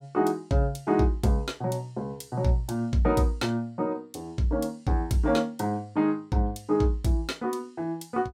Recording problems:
none

